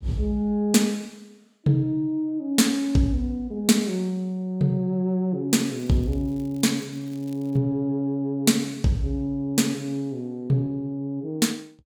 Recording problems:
crackling; from 5.5 to 7.5 s; loose cable, SNR 29 dB

